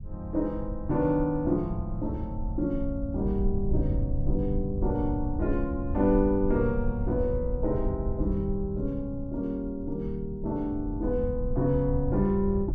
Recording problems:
rumble; below 84 Hz, SNR 5 dB

